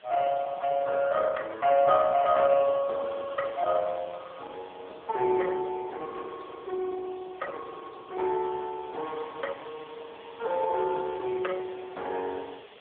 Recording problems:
telephone audio; 320 Hz to 2.8 kHz, AMR-NB
background hiss; SNR 24 dB

